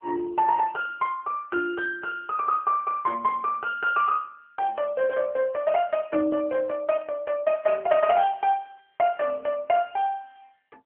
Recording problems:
telephone audio; 280 Hz to 3.6 kHz, AMR-NB

